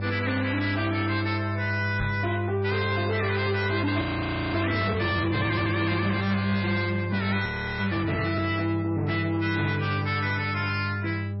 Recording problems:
lossy compression; MP3, log-spectral distance 4 dB, nothing above 4.9 kHz
distortion; soft clipping, signal-to-distortion ratio 7 dB
hum; 50 Hz, harmonics up to 800 Hz, SNR 4 dB
microphone thump; at 2 s; peak -1 dB vs average level
frozen audio; at 4 s for 0.5 s and at 7.5 s

